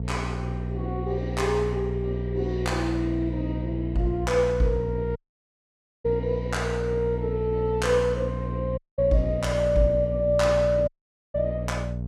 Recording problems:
mains hum; 60 Hz, harmonics up to 480 Hz, SNR 5 dB
audio cutting out; at 5 s for 1 s, at 9 s and at 11 s

